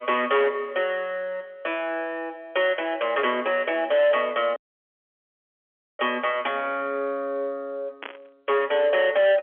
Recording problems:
telephone audio; 220 Hz to 3.4 kHz, G.711
distorted audio; hard clipping, signal-to-distortion ratio 11 dB
audio cutting out; at 4.5 s for 1.5 s
static burst; at 8 s; peak -7 dB vs average level

